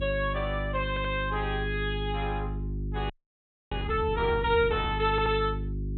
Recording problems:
treble cut off; nothing above 4 kHz
hum; 50 Hz, harmonics up to 400 Hz, SNR 5 dB
audio stuttering; at 1 s and at 5 s
frozen audio; at 3 s for 0.5 s

